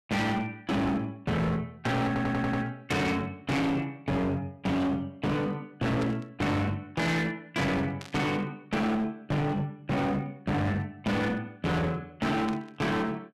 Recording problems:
distortion; hard clipping, uneven, signal-to-distortion ratio 5 dB
stutter; at 2 s
burst of static; at 6 s, at 8 s and at 12 s; peak -8 dB vs average level

